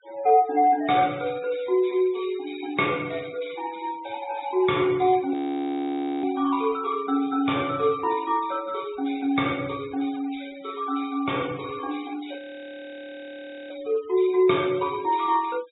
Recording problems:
treble cut off; nothing above 4 kHz
denoising artefacts; signal-to-artefact ratio 20 dB
audio freezing; at 5.5 s for 1 s and at 12 s for 1.5 s

